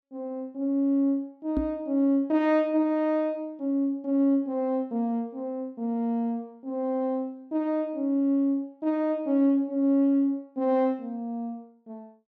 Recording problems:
microphone bump; at 1.5 s; peak +3 dB vs average level

